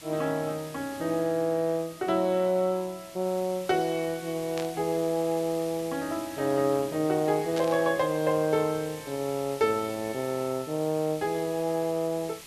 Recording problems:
background hiss; slope 0 dB per octave, SNR 16 dB
static burst; at 4.5 s and at 7.5 s; peak -6 dB vs average level

